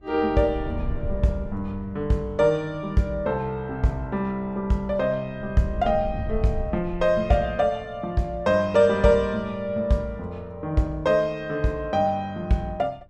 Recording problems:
wind noise; below 100 Hz, SNR 11 dB

